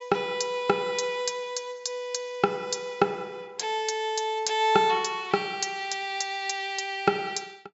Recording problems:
treble missing; nothing above 8 kHz

